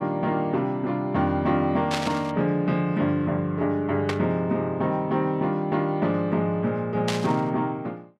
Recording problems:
burst of static; at 2 s, at 4 s and at 7 s; peak +1 dB vs average level

